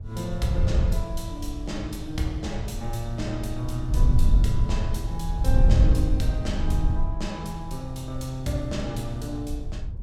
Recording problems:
wind noise; below 80 Hz, SNR -4 dB

